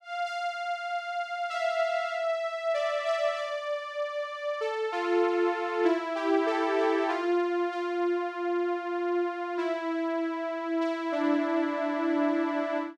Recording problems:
none

